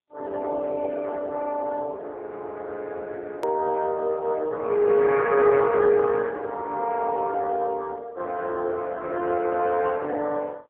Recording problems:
phone line; 320 Hz to 2.5 kHz, AMR-NB
hard cut with a click; at 3.5 s

